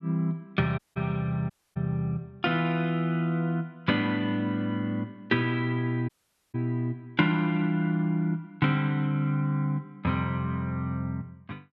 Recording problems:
dropout; at 1 s, at 1.5 s and at 6 s

